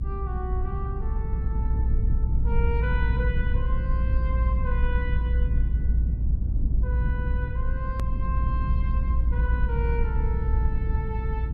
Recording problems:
rumble; below 70 Hz, strongest tone 58 Hz, SNR -10 dB
edit click; at 8 s

